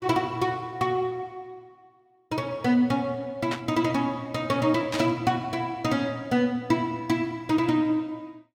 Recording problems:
burst of static; at 3.5 s and at 5 s; peak -2 dB vs average level

